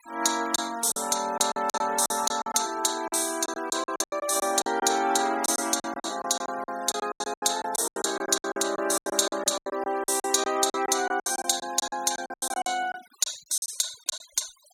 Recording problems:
noise reduction artefacts; signal-to-artefact ratio 19 dB
lost packets; 17% of the sound replaced, filled with silence

